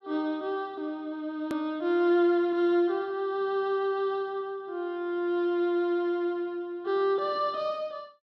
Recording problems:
hard cut with a click; at 1.5 s

